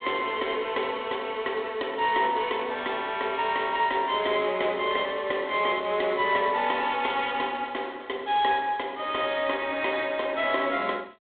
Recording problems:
phone line; 300 Hz to 4 kHz, G.726

